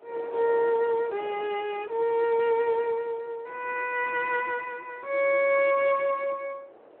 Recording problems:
phone line; 320 Hz to 3.2 kHz, Speex
wind noise; below 730 Hz, SNR 20 dB

